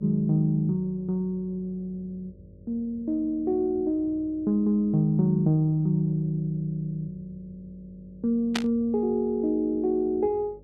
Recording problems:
mains hum; 50 Hz, harmonics up to 600 Hz, SNR 27 dB
static burst; at 8.5 s; peak +2 dB vs average level

